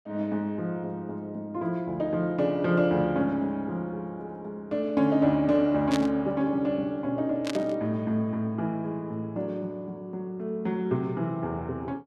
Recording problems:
static burst; at 6 s and at 7.5 s; peak -2 dB vs average level

